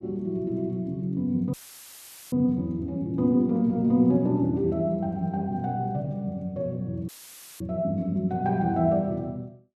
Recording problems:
audio cutting out; at 1.5 s for 1 s and at 7 s for 0.5 s; filled with static

